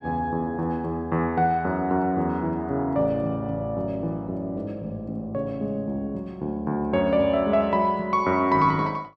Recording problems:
none

